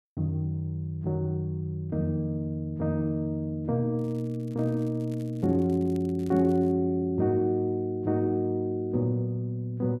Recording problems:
crackling; from 4 to 6.5 s; loose cable, SNR 30 dB

